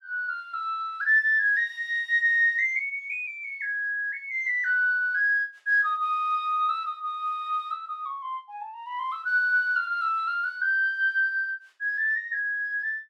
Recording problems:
none

